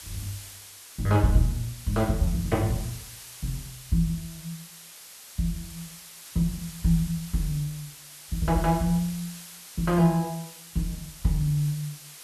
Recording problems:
background hiss; slope +2 dB per octave, SNR 15 dB

